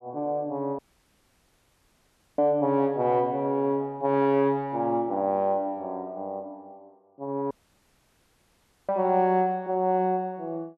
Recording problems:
dropout; at 1 s for 1.5 s and at 7.5 s for 1.5 s

